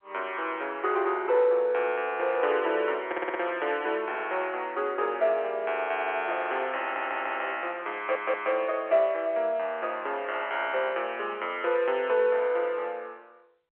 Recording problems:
telephone audio; 340 Hz to 3.3 kHz, G.711
audio stuttering; 4 times, first at 3 s

